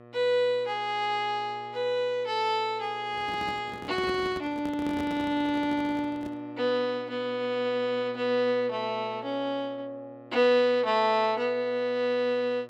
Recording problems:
hum; 60 Hz, harmonics up to 1.9 kHz, SNR 21 dB
handling noise; from 3 to 6.5 s; peak -5 dB vs average level

